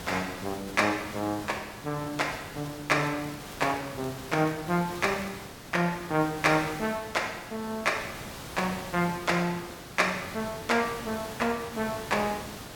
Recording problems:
hiss; slope -4 dB per octave, SNR 11 dB
crackling; from 3 to 5.5 s and at 11 s; loose cable, SNR 26 dB

